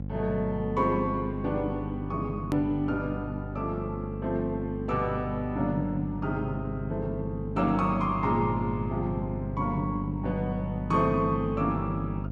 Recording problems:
hum; 50 Hz, harmonics up to 550 Hz, SNR 6 dB
hard cut with a click; at 2.5 s

